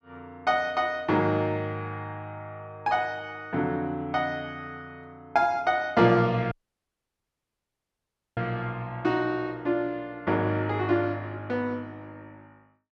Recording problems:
dropout; at 6.5 s for 2 s

